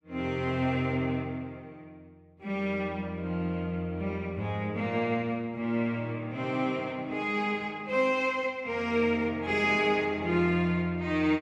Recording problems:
none

